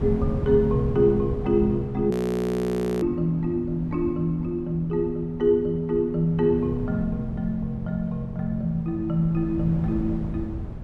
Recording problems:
wind noise; below 170 Hz, SNR 10 dB
frozen audio; at 2 s for 1 s

